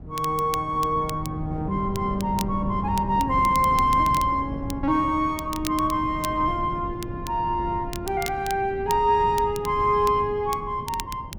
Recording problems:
wind noise; below 230 Hz, SNR 11 dB
crackle; vinyl, SNR 16 dB

